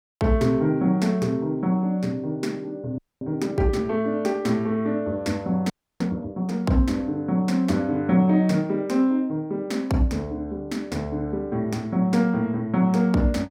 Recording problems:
audio freezing; at 3 s and at 5.5 s

